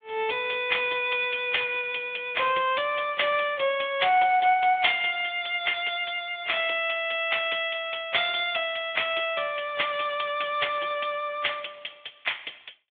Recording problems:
telephone audio; 340 Hz to 3.6 kHz, Speex

